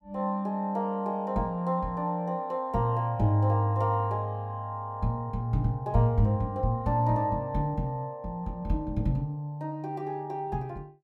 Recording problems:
none

